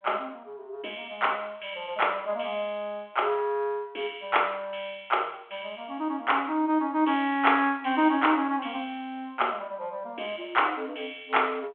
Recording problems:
phone line; 300 Hz to 3.4 kHz, G.726

